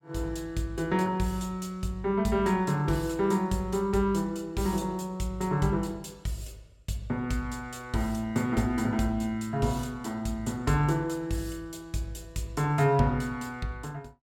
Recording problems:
none

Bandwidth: 17.5 kHz